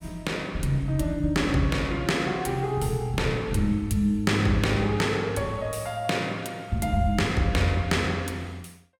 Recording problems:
none

